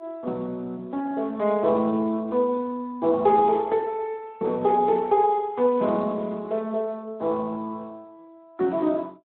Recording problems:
phone line; 190 Hz to 2.1 kHz, Speex

